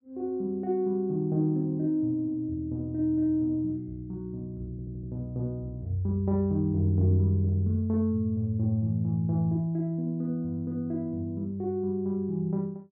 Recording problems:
stutter; at 4.5 s

